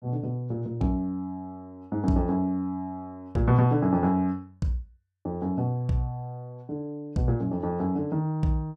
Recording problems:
none

